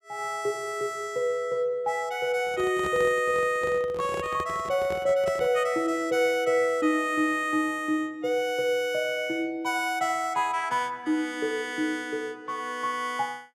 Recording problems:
handling noise; from 2.5 to 5.5 s; peak -6 dB vs average level

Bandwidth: 14.5 kHz